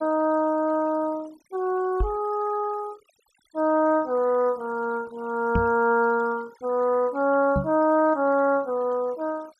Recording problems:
noise reduction artefacts; signal-to-artefact ratio 25 dB
microphone thump; at 2 s, at 5.5 s and at 7.5 s; peak +2 dB vs average level

